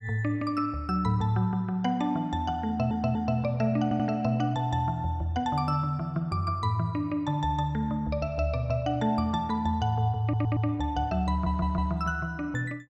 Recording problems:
stutter; 4 times, first at 2.5 s

